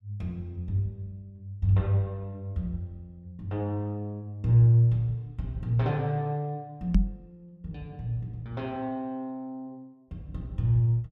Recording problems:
microphone bump; at 7 s; peak +8 dB vs average level

